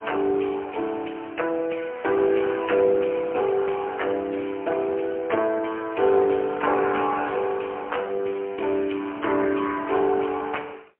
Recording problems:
telephone audio; 260 Hz to 3.2 kHz, AMR-NB, then MP3

